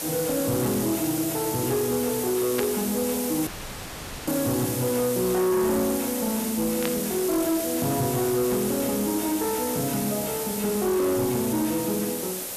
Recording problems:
distortion; hard clipping, signal-to-distortion ratio 11 dB
hiss; SNR 5 dB
burst of static; at 2.5 s and at 7 s; peak -2 dB vs average level
audio cutting out; at 3.5 s for 1 s

